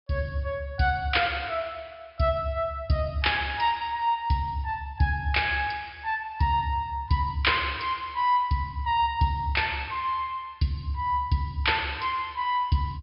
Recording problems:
treble cut off; nothing above 5.5 kHz

